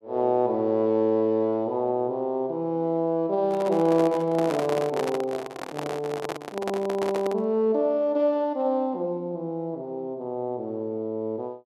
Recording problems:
microphone handling noise; from 3.5 to 7.5 s; peak -1 dB vs average level

